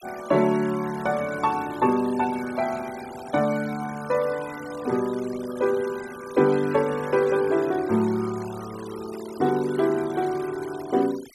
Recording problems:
noise reduction artefacts; signal-to-artefact ratio 18 dB

